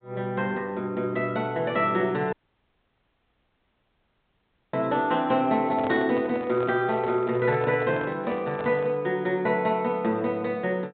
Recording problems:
treble cut off; nothing above 4 kHz
dropout; at 2.5 s for 2.5 s
microphone handling noise; from 5.5 to 9 s; peak -5 dB vs average level

